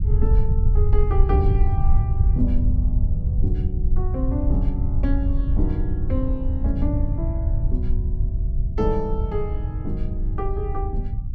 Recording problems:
rumble; below 80 Hz, SNR -6 dB

